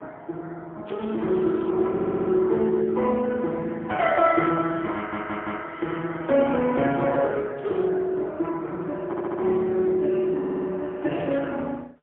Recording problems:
phone line; 190 Hz to 3 kHz, AMR-NB, then MP3
crackling; at 1 s, at 7.5 s and at 11 s; loose cable, SNR 27 dB
audio stuttering; 4 times, first at 2 s

